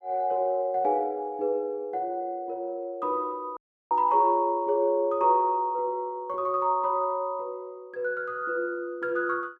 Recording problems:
audio cutting out; at 3.5 s

